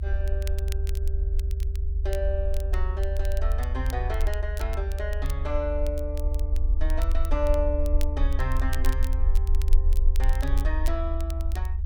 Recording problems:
rumble; below 70 Hz, SNR -6 dB
crackle; vinyl, SNR 13 dB

